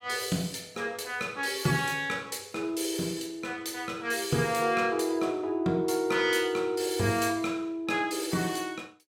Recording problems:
none

